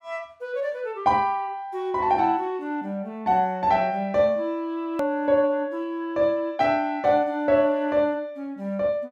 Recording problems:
click at an edit; at 5 s

